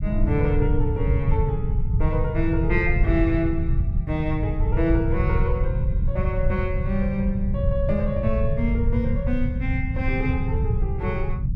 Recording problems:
low-frequency rumble; below 110 Hz, SNR -2 dB

